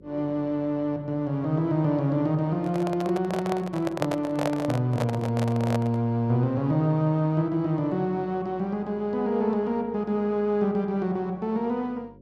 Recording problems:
hum; 50 Hz, harmonics up to 550 Hz, SNR 26 dB
handling noise; from 2.5 to 6 s; peak +2 dB vs average level

